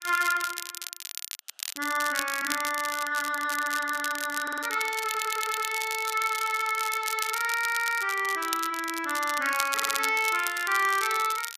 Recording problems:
crackling; vinyl, SNR 7 dB
audio stuttering; 4 times, first at 4.5 s

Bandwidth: 14.5 kHz